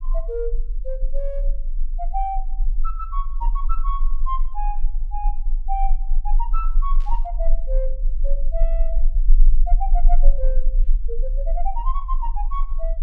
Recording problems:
low-frequency rumble; below 32 Hz, strongest tone 20 Hz, SNR -7 dB
static burst; at 7 s; peak -14 dB vs average level

